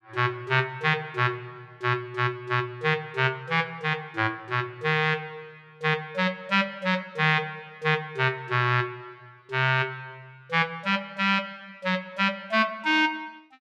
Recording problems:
none

